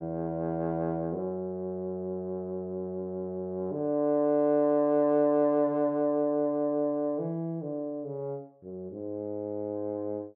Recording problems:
none

